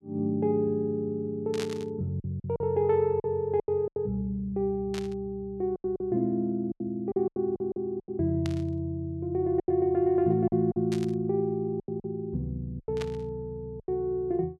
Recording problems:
lost packets; 9% of the sound replaced, filled with silence
burst of static; 5 times, first at 1.5 s; peak -5 dB vs average level

